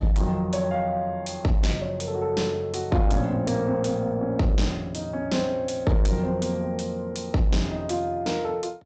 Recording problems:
treble missing; nothing above 8 kHz
distortion; soft clipping, signal-to-distortion ratio 11 dB

